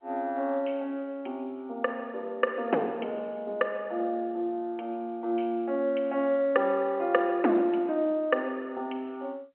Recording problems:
telephone audio; 240 Hz to 3.1 kHz, G.711

